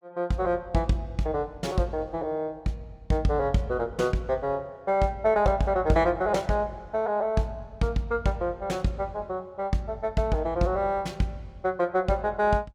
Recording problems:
none

